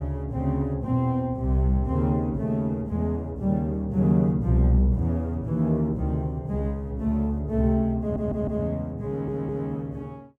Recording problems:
audio stuttering; at 8 s and at 9 s

